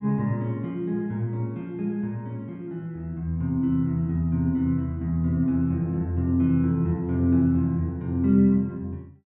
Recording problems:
treble cut off; nothing above 3.9 kHz

